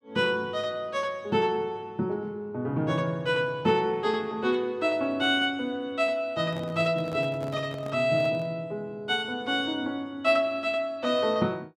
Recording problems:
handling noise; from 6.5 to 8.5 s; peak -10 dB vs average level

